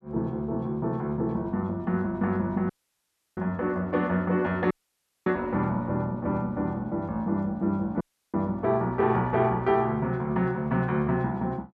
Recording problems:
audio cutting out; at 2.5 s for 0.5 s, at 4.5 s for 0.5 s and at 8 s

